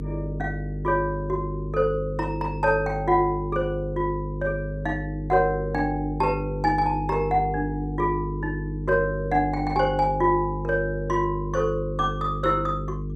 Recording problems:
mains hum; 50 Hz, harmonics up to 450 Hz, SNR 6 dB

